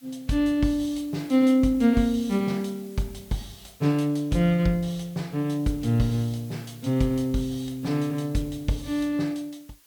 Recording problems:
hiss; slope +1 dB per octave, SNR 25 dB

